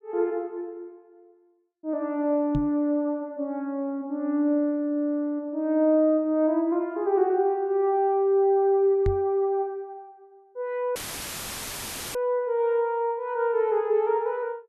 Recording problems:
microphone bump; at 2.5 s and at 9 s; peak 0 dB vs average level
audio cutting out; at 11 s for 1 s; filled with static

